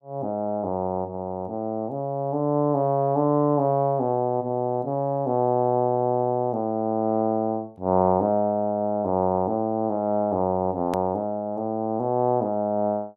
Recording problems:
click at an edit; at 11 s

